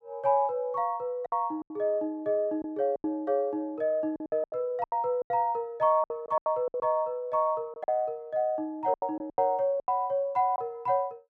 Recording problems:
packet loss; 10% of the sound replaced, filled with silence

